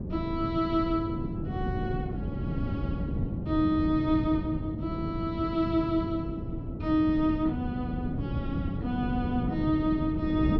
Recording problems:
wind noise; below 240 Hz, SNR 4 dB

